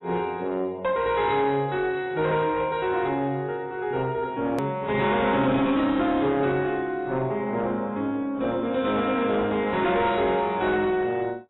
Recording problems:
lossy compression; AAC, log-spectral distance 2 dB, nothing above 3.4 kHz
distortion; soft clipping, signal-to-distortion ratio 11 dB
hard cut with a click; at 4.5 s

